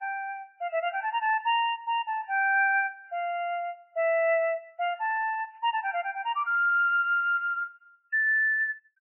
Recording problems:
lossy codec; MP3, log-spectral distance 2 dB, nothing above 2.4 kHz

